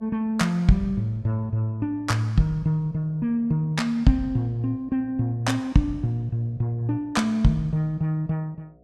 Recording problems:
electrical hum; 60 Hz, harmonics up to 720 Hz, SNR 32 dB

